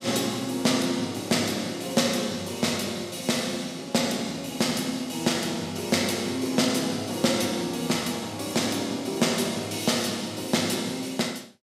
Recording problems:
none

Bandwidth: 15.5 kHz